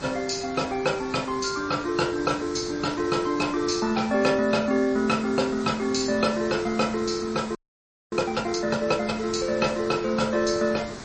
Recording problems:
codec artefacts; MP3, log-spectral distance 6 dB, nothing above 7.1 kHz
background hiss; SNR 14 dB
frozen audio; at 7.5 s for 0.5 s

